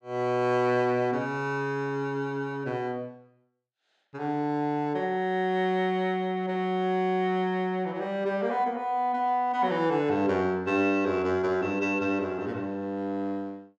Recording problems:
none

